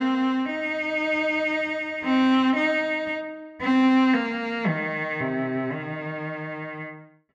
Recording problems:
none

